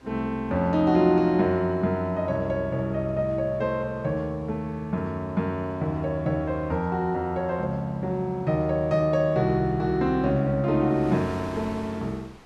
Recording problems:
wind noise; below 1.8 kHz, SNR 24 dB

